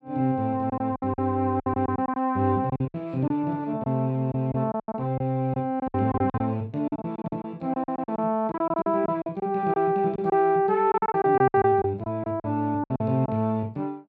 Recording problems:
packet loss; 13% of the sound replaced, filled with silence

